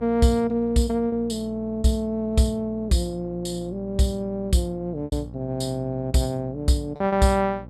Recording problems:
electrical hum; 60 Hz, harmonics up to 840 Hz, SNR 16 dB
lost packets; 3% of the sound replaced, filled with repeated pitch periods

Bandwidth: 13.5 kHz